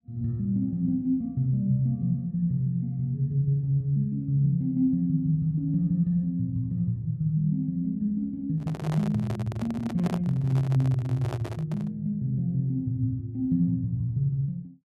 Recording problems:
handling noise; from 8.5 to 12 s; peak -4 dB vs average level

